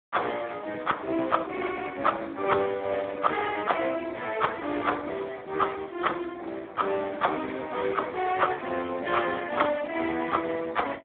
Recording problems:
telephone audio; 260 Hz to 3.6 kHz, Speex

